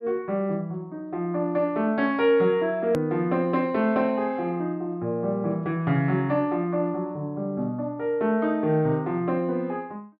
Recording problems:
low-pass filter; nothing above 5.5 kHz
hard cut with a click; at 3 s

